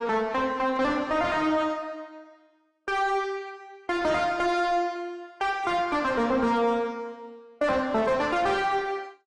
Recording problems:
lossy compression; AAC, log-spectral distance 2 dB, nothing above 10.1 kHz
distortion; soft clipping, signal-to-distortion ratio 9 dB

